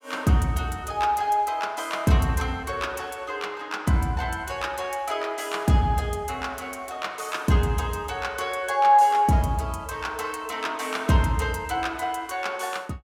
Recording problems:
none

